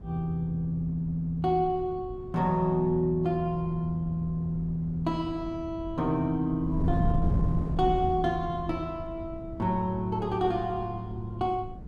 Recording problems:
wind on the microphone; below 160 Hz, SNR 8 dB

